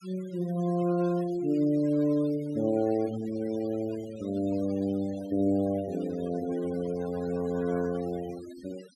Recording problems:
denoising artefacts; signal-to-artefact ratio 20 dB

